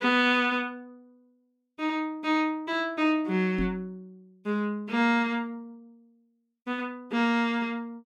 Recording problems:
microphone thump; at 3.5 s; peak -1 dB vs average level

